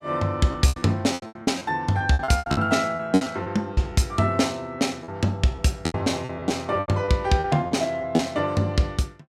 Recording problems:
lost packets; 14% of the sound replaced, filled with repeated pitch periods

